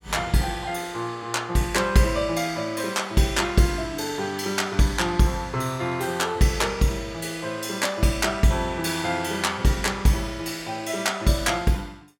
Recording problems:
none

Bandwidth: 17 kHz